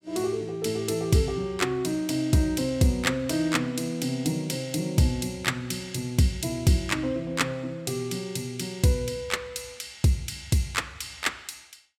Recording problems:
none

